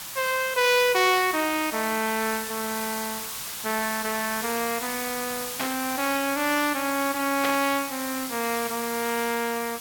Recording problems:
background hiss; SNR 6 dB
static burst; at 5.5 s and at 7.5 s; peak +1 dB vs average level

